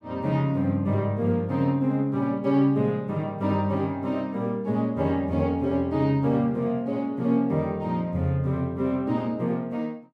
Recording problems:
none

